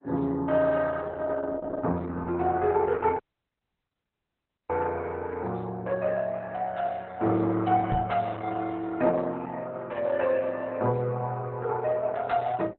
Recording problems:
lossy compression; Opus, log-spectral distance 3 dB, nothing above 4 kHz
audio cutting out; at 3 s for 1.5 s
microphone bump; at 8 s; peak +1 dB vs average level

